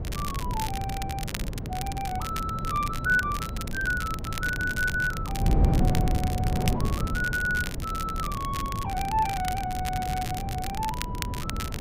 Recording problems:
wind noise; below 190 Hz, SNR 1 dB
crackling; vinyl, SNR 8 dB

